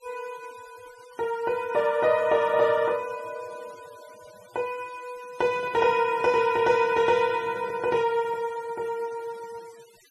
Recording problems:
denoising artefacts; signal-to-artefact ratio 25 dB
handling noise; from 5.5 to 8.5 s; peak -12 dB vs average level

